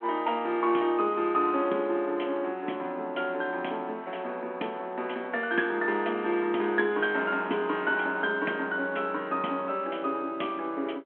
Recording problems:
phone line; 240 Hz to 3.3 kHz, G.726

